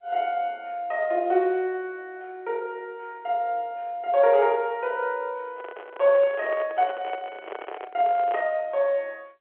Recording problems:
phone line; 300 Hz to 3.4 kHz, G.711
microphone handling noise; from 5.5 to 8.5 s; peak -3 dB vs average level

